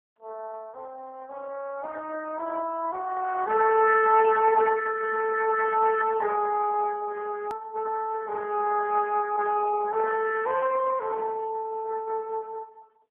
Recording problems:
phone line; 320 Hz to 2.5 kHz, AMR-NB
hard cut with a click; at 7.5 s

